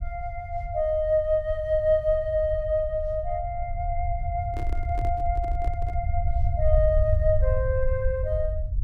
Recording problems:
low-frequency rumble; below 80 Hz, SNR 3 dB
handling noise; from 4.5 to 6 s; peak -10 dB vs average level

